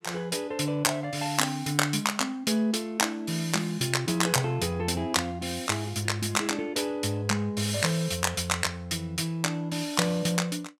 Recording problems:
none

